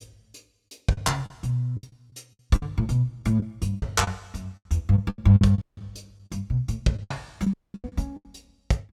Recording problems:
packet loss; 13% of the sound replaced, filled with the last packet
audio cutting out; at 5.5 s and at 7.5 s

